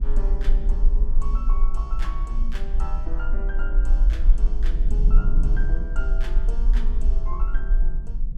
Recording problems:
low-frequency rumble; below 38 Hz, strongest tone 26 Hz, SNR -13 dB
wind noise; below 170 Hz, SNR 0 dB

